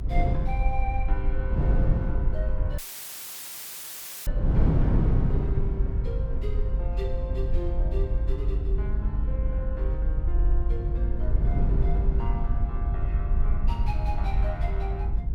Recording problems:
rumble; below 56 Hz, SNR -9 dB
wind noise; below 170 Hz, SNR -5 dB
audio cutting out; at 3 s for 1.5 s; filled with static
audio stuttering; at 10 s

